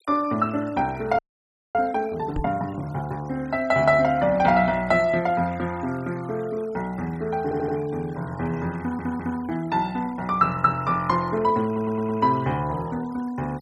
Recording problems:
denoising artefacts; signal-to-artefact ratio 23 dB
frozen audio; at 1 s for 0.5 s
microphone bump; at 2.5 s; peak -2 dB vs average level
stutter; at 7.5 s, at 9 s and at 12 s

